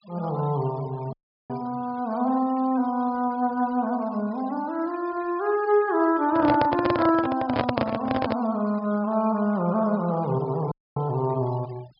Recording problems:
low-pass filter; nothing above 5.5 kHz
denoising artefacts; signal-to-artefact ratio 22 dB
audio cutting out; at 1 s and at 11 s
microphone handling noise; from 6.5 to 8.5 s; peak +4 dB vs average level

